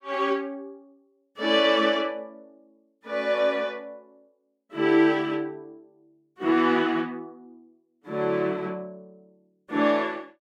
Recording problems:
none

